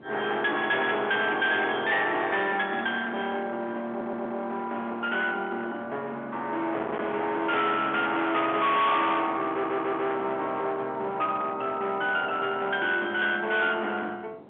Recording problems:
phone line; 320 Hz to 3.6 kHz, G.711
distorted audio; hard clipping, uneven, signal-to-distortion ratio 8 dB
wind noise; below 1.6 kHz, SNR 19 dB
stutter; at 4 s and at 9.5 s

